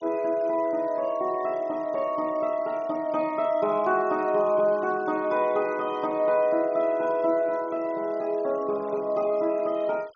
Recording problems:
treble cut off; nothing above 6.5 kHz
noise reduction artefacts; signal-to-artefact ratio 27 dB

